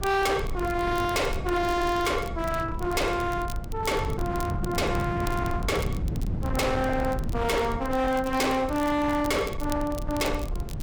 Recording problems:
distortion; hard clipping, signal-to-distortion ratio 7 dB
low-frequency rumble; below 130 Hz, SNR 9 dB
wind noise; below 200 Hz, SNR 9 dB
crackle; vinyl, SNR 19 dB

